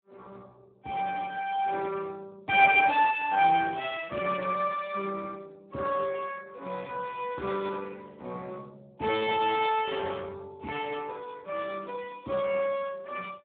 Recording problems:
phone line; 260 Hz to 3.4 kHz, Speex

